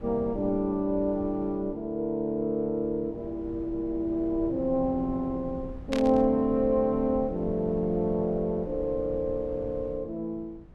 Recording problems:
rumble; below 150 Hz, SNR 16 dB
burst of static; at 6 s; peak -3 dB vs average level

